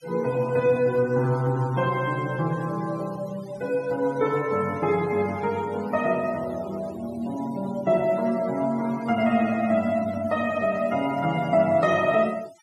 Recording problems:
denoising artefacts; signal-to-artefact ratio 21 dB

